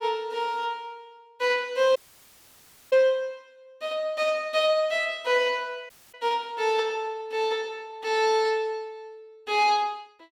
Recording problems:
audio cutting out; at 2 s for 1 s and at 6 s

